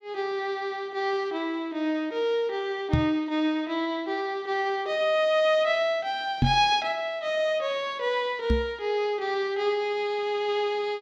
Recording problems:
microphone thump; at 3 s, at 6.5 s and at 8.5 s; peak +7 dB vs average level

